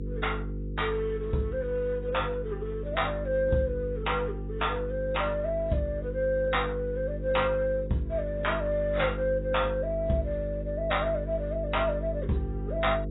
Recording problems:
lossy codec; AAC, log-spectral distance 2 dB, nothing above 3.8 kHz
electrical hum; 50 Hz, harmonics up to 500 Hz, SNR 6 dB

